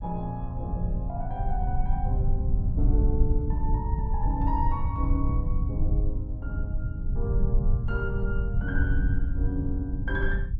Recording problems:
low-frequency rumble; below 80 Hz, SNR -5 dB

